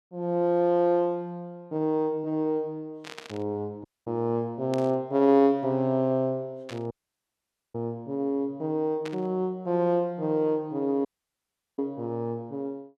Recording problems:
burst of static; 4 times, first at 3 s; peak -9 dB vs average level
dropout; at 4 s, at 7 s for 1 s and at 11 s for 0.5 s

